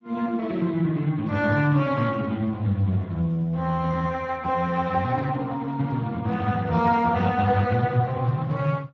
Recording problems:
lossy codec; Speex, log-spectral distance 3 dB

